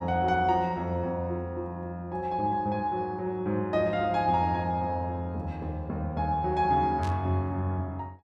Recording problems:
static burst; at 7 s; peak -11 dB vs average level

